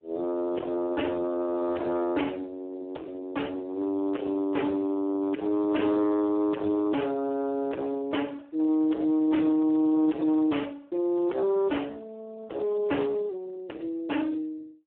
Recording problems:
telephone audio; 260 Hz to 2.2 kHz, Speex
distortion; soft clipping, signal-to-distortion ratio 7 dB

